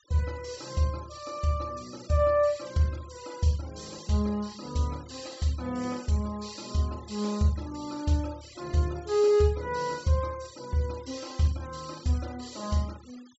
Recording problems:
treble cut off; nothing above 8 kHz
noise reduction artefacts; signal-to-artefact ratio 21 dB

